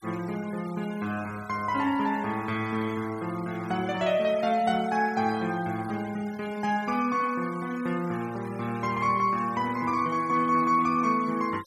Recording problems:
noise reduction artefacts; signal-to-artefact ratio 19 dB

